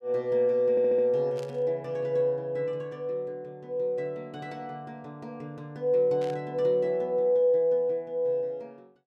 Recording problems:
audio stuttering; at 0.5 s
static burst; at 1.5 s and at 6 s; peak -15 dB vs average level

